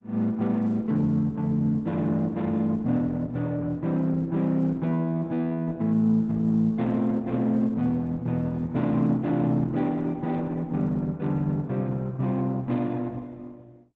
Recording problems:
lossy codec; Opus, log-spectral distance 2 dB

